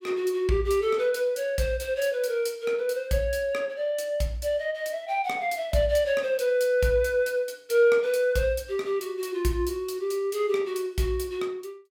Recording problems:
none

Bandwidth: 16.5 kHz